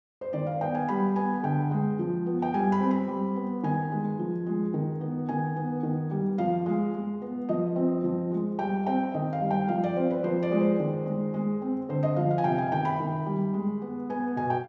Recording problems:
none

